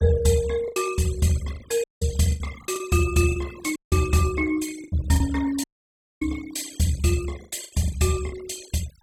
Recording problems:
noise reduction artefacts; signal-to-artefact ratio 18 dB
packet loss; 7% of the sound replaced, filled with the last packet
audio cutting out; at 2 s, at 4 s and at 5.5 s for 0.5 s

